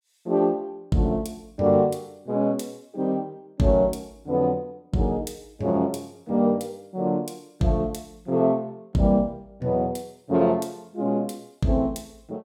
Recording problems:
none

